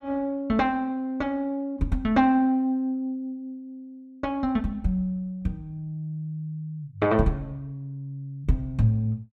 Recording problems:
none

